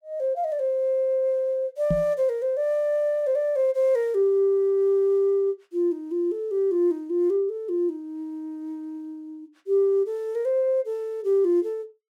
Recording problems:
microphone thump; at 2 s; peak +2 dB vs average level

